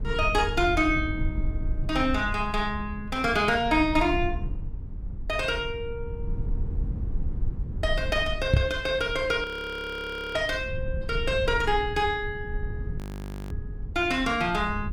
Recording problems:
rumble; below 84 Hz, SNR 8 dB
microphone thump; at 8.5 s; peak +9 dB vs average level
frozen audio; at 9.5 s for 1 s and at 13 s for 0.5 s

